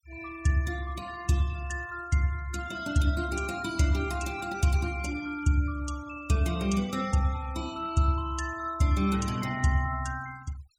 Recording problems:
noise reduction artefacts; signal-to-artefact ratio 19 dB

